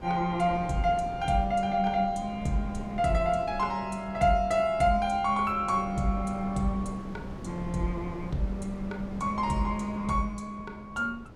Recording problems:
wind on the microphone; below 350 Hz, SNR 14 dB

